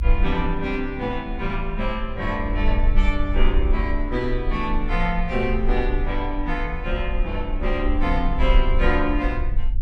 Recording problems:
low-frequency rumble; below 42 Hz, strongest tone 28 Hz, SNR 1 dB

